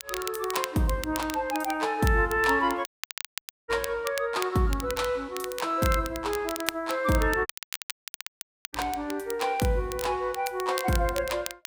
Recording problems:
crackling; vinyl, SNR 11 dB
audio cutting out; at 3 s for 1 s and at 7.5 s for 1.5 s

